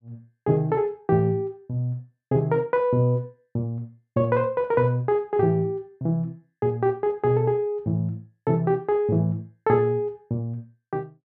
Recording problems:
none

